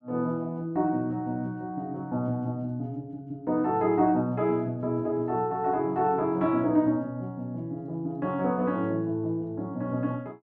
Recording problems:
none

